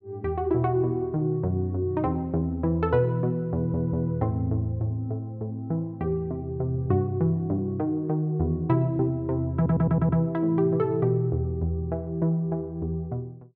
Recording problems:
stutter; at 3.5 s and at 9.5 s

